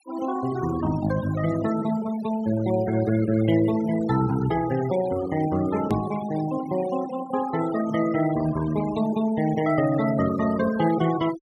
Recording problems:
denoising artefacts; signal-to-artefact ratio 14 dB
hard cut with a click; at 6 s

